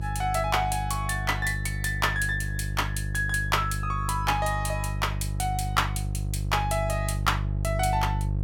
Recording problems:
hum; 50 Hz, harmonics up to 500 Hz, SNR 3 dB

